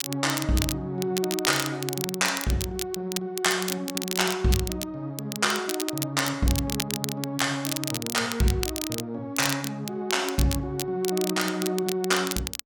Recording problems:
crackling; vinyl, SNR 5 dB

